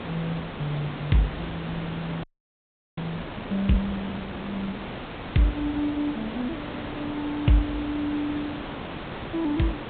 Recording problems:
treble missing; nothing above 4 kHz
background hiss; SNR 7 dB
frozen audio; at 2 s for 0.5 s

